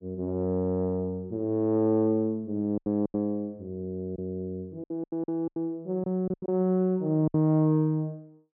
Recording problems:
packet loss; 8% of the sound replaced, filled with silence

